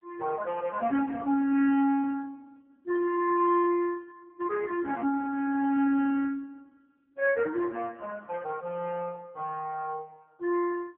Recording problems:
phone line; 240 Hz to 3.3 kHz, AMR-NB

